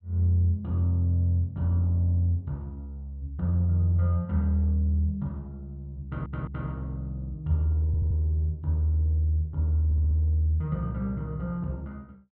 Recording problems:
audio stuttering; at 6 s, at 8 s and at 10 s

